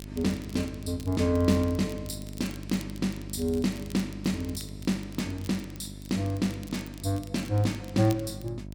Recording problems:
hum; 50 Hz, harmonics up to 650 Hz, SNR 12 dB
crackle; vinyl, SNR 20 dB

